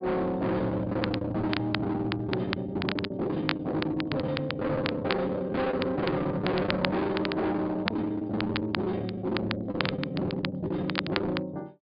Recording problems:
treble cut off; nothing above 5 kHz
distorted audio; hard clipping, signal-to-distortion ratio 6 dB
crackle; vinyl, SNR 7 dB
lost packets; 18% of the sound replaced, filled with the last packet

